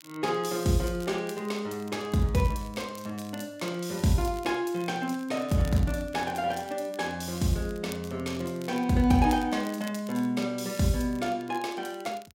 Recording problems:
crackle; vinyl, SNR 21 dB

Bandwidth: 16 kHz